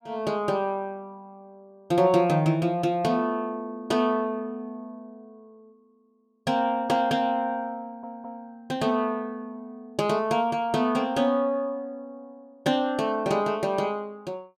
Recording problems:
audio stuttering; at 8 s

